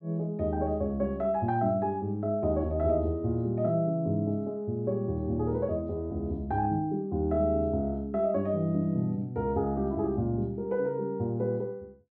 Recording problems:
none

